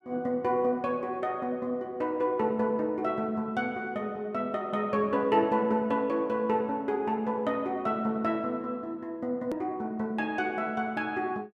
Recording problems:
click at an edit; at 9.5 s

